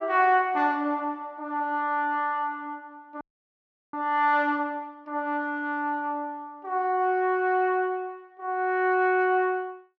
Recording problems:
audio freezing; at 3 s for 0.5 s

